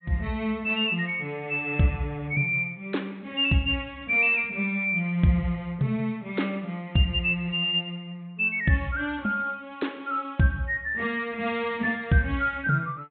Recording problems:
treble missing; nothing above 4 kHz

